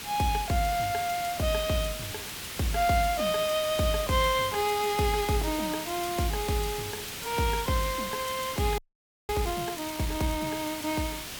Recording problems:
background hiss; slope 0 dB per octave, SNR 7 dB
audio freezing; at 9 s for 0.5 s

